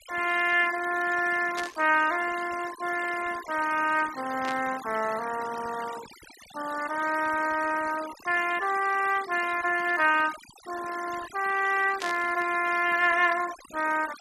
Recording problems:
noise reduction artefacts; signal-to-artefact ratio 15 dB
burst of static; at 1.5 s, at 4.5 s and at 12 s; peak -5 dB vs average level

